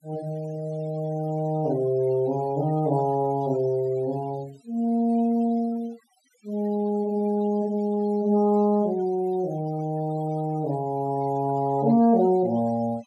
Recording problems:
denoising artefacts; signal-to-artefact ratio 25 dB

